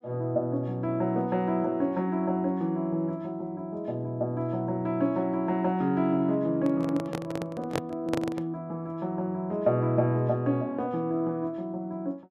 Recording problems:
handling noise; from 6.5 to 8.5 s; peak +3 dB vs average level

